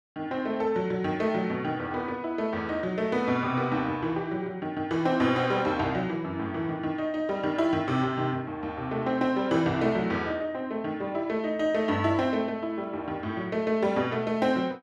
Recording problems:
none

